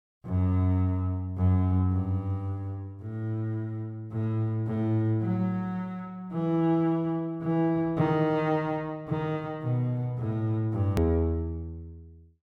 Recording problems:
click at an edit; at 11 s

